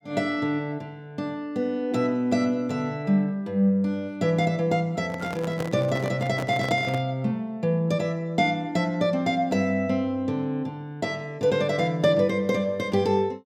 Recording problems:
microphone handling noise; from 5 to 7 s; peak -3 dB vs average level

